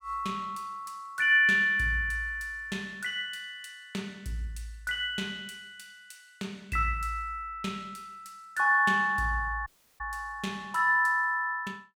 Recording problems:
dropout; at 9.5 s

